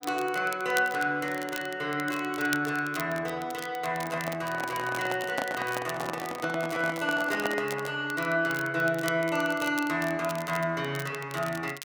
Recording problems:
crackling; vinyl, SNR 14 dB
microphone handling noise; from 4 to 8 s; peak +2 dB vs average level

